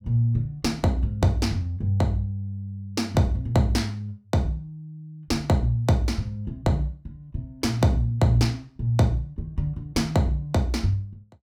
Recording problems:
none

